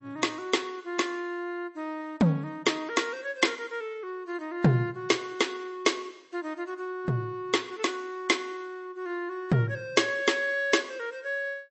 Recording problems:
lossy codec; MP3, log-spectral distance 2 dB, nothing above 7.8 kHz

